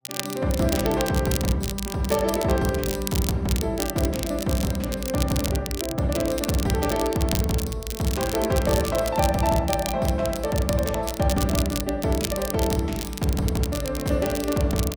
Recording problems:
crackle; vinyl, SNR 8 dB

